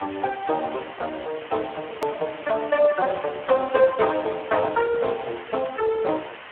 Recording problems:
telephone audio; 370 Hz to 3.5 kHz, Speex
hiss; SNR 15 dB
hard cut with a click; at 2 s

